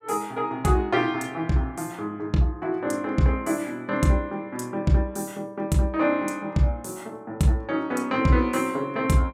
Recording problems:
none

